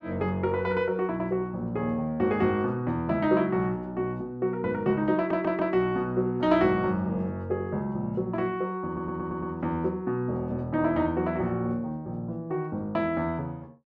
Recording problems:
stutter; at 5 s and at 9 s

